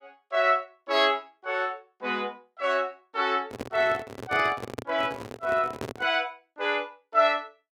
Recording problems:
handling noise; from 3.5 to 6 s; peak -3 dB vs average level

